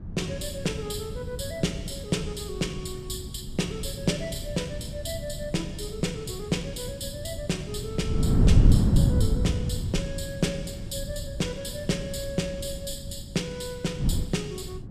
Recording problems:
wind on the microphone; below 160 Hz, SNR -2 dB

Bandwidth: 14.5 kHz